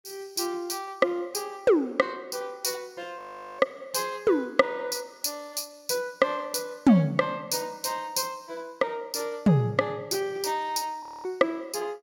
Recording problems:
audio freezing; at 3 s and at 11 s

